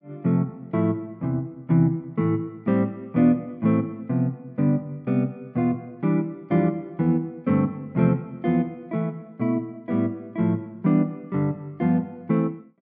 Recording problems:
none

